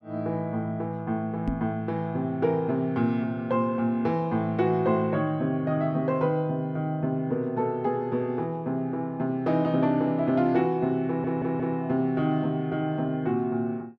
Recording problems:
knock on the microphone; at 1.5 s; peak +1 dB vs average level
audio stuttering; at 11 s

